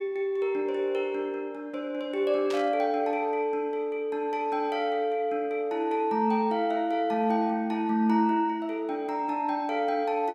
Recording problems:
static burst; at 2.5 s; peak -7 dB vs average level

